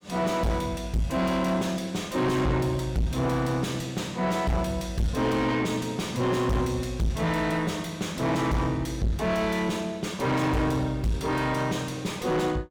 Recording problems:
distortion; soft clipping, signal-to-distortion ratio 6 dB

